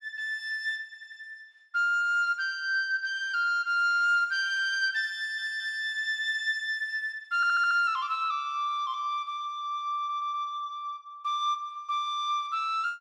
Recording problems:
stutter; 4 times, first at 1 s

